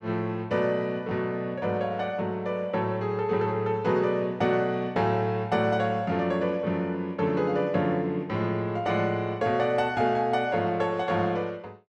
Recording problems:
none

